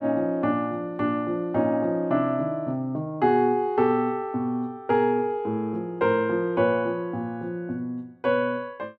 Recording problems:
none

